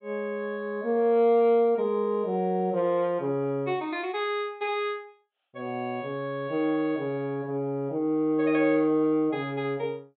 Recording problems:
treble missing; nothing above 4 kHz

